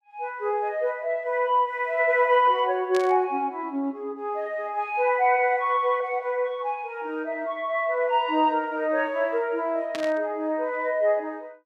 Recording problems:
static burst; at 3 s and at 10 s; peak -6 dB vs average level

